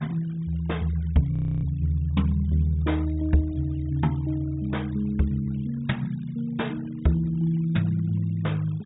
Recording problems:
treble cut off; nothing above 4 kHz
denoising artefacts; signal-to-artefact ratio 27 dB
audio freezing; at 1.5 s

